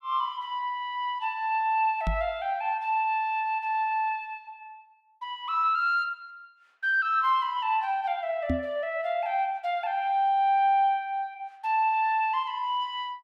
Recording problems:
microphone bump; at 2 s and at 8.5 s; peak +2 dB vs average level

